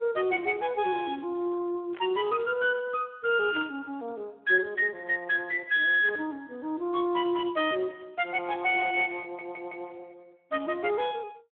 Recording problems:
phone line; 280 Hz to 3.5 kHz, Speex
static burst; at 2 s, at 3.5 s and at 6 s; peak -10 dB vs average level
stutter; at 9 s

